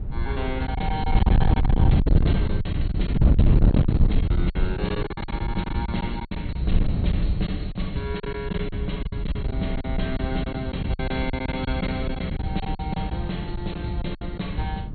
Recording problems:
treble missing; nothing above 4.4 kHz
distorted audio; hard clipping, signal-to-distortion ratio 11 dB
wind on the microphone; below 130 Hz, SNR -4 dB
packet loss; 12% of the sound replaced, filled with silence

